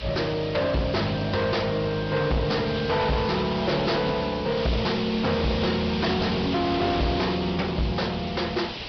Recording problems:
treble cut off; nothing above 5.3 kHz
lossy codec; MP3, log-spectral distance 14 dB
distortion; soft clipping, signal-to-distortion ratio 6 dB
background hiss; SNR 9 dB

